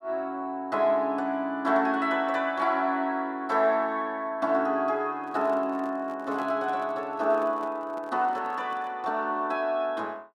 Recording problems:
microphone handling noise; from 5 to 9 s; peak -13 dB vs average level

